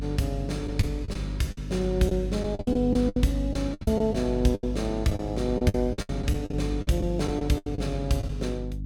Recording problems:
mains hum; 50 Hz, harmonics up to 300 Hz, SNR 6 dB
lost packets; 13% of the sound replaced, filled with the last packet

